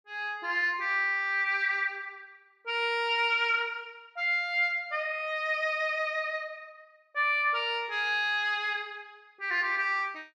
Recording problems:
none

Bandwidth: 12.5 kHz